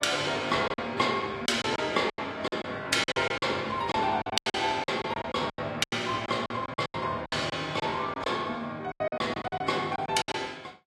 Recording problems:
codec artefacts; AAC, log-spectral distance 3 dB, nothing above 13.5 kHz
packet loss; 15% of the sound replaced, filled with silence

